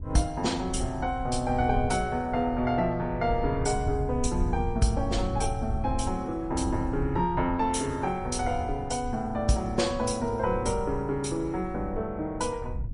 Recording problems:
lossy codec; MP3, log-spectral distance 2 dB, nothing above 10.4 kHz
wind on the microphone; below 92 Hz, SNR 8 dB

